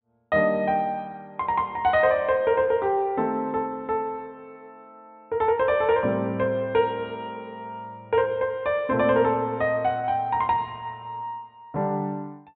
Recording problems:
low-pass filter; nothing above 4 kHz

